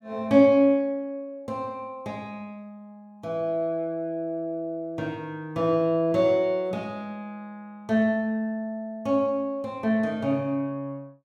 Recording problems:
none

